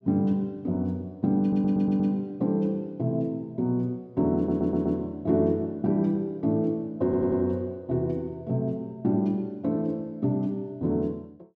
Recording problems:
audio stuttering; at 1.5 s, at 4.5 s and at 7 s

